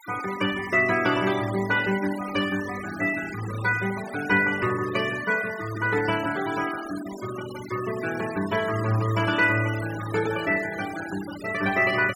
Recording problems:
denoising artefacts; signal-to-artefact ratio 13 dB

